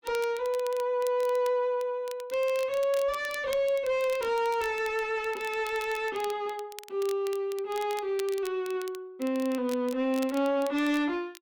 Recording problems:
distorted audio; soft clipping, signal-to-distortion ratio 10 dB
crackle; vinyl, SNR 18 dB

